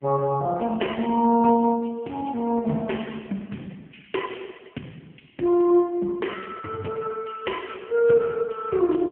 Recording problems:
phone line; 170 Hz to 3.1 kHz, AMR-NB

